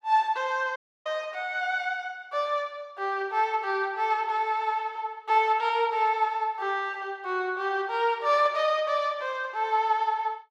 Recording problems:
dropout; at 1 s

